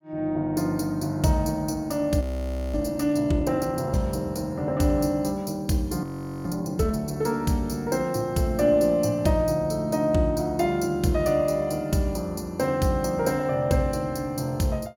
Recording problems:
audio freezing; at 2 s for 0.5 s and at 6 s

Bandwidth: 17.5 kHz